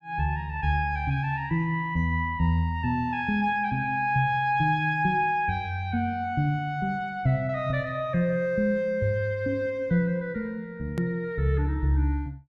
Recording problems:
edit click; at 11 s

